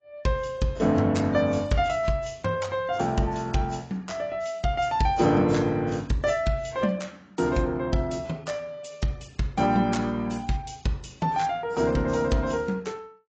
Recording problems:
lossy codec; AAC, log-spectral distance 3 dB, nothing above 7.3 kHz

